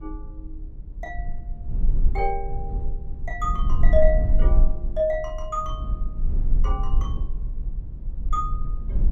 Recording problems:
rumble; below 48 Hz, strongest tone 18 Hz, SNR -1 dB

